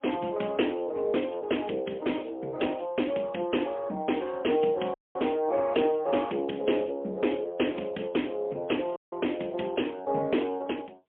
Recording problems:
phone line; 170 Hz to 3.3 kHz, AMR-NB, then MP3
audio cutting out; at 5 s and at 9 s

